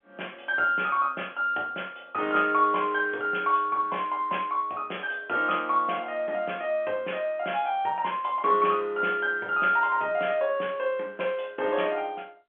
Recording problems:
phone line; 280 Hz to 3.3 kHz, G.711

